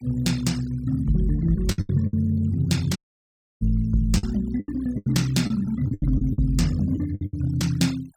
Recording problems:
denoising artefacts; signal-to-artefact ratio 21 dB
packet loss; 10% of the sound replaced, filled with the last packet
dropout; at 3 s for 0.5 s

